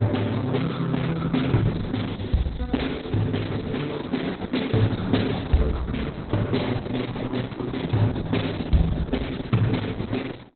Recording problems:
codec artefacts; Opus, log-spectral distance 7 dB, nothing above 4.1 kHz

